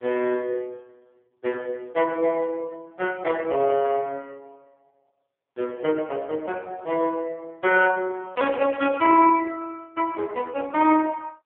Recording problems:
phone line; 190 Hz to 3.1 kHz, AMR-NB

